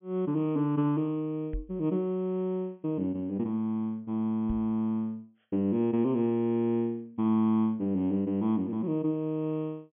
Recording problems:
low-pass filter; nothing above 3.4 kHz
microphone thump; at 1.5 s and at 4.5 s; peak -4 dB vs average level

